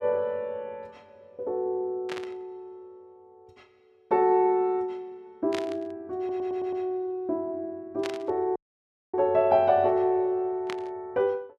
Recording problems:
burst of static; 4 times, first at 2 s; peak -5 dB vs average level
stutter; at 6 s
audio cutting out; at 8.5 s for 0.5 s

